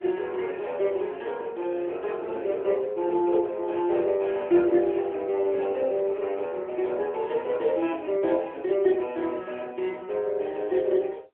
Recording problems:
phone line; 280 Hz to 3.3 kHz, AMR-NB

